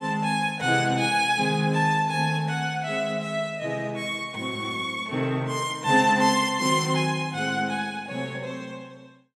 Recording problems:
none

